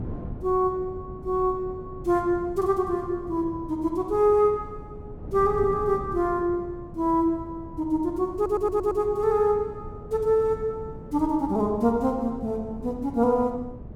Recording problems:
wind on the microphone; below 240 Hz, SNR 15 dB
audio stuttering; at 8.5 s

